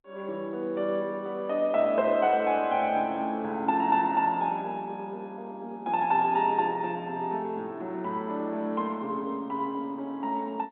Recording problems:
telephone audio; 170 Hz to 3.8 kHz, G.711

